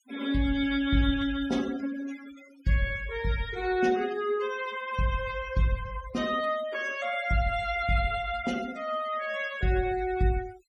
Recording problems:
denoising artefacts; signal-to-artefact ratio 16 dB

